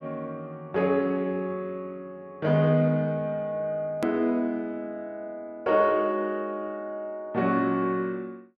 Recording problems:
edit click; at 4 s

